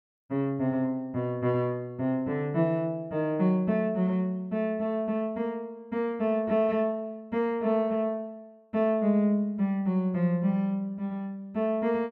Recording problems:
none

